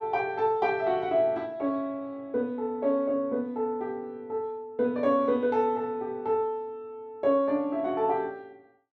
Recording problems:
none

